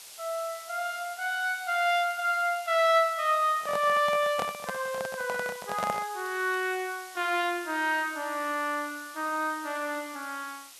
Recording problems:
background hiss; SNR 16 dB
handling noise; from 3.5 to 6 s; peak 0 dB vs average level
crackling; from 5 to 7 s; loose cable, SNR 29 dB

